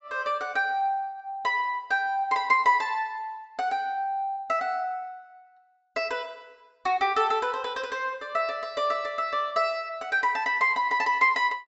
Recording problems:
low-pass filter; nothing above 7.7 kHz

